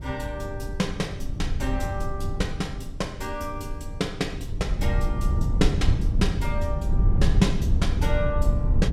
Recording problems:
low-frequency rumble; below 94 Hz, SNR -3 dB

